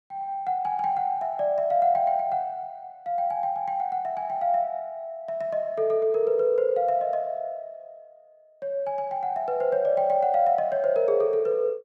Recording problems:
none

